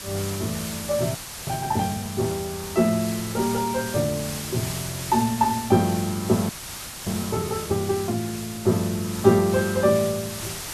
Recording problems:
background hiss; slope 0 dB per octave, SNR 9 dB
frozen audio; at 1 s and at 6.5 s for 0.5 s

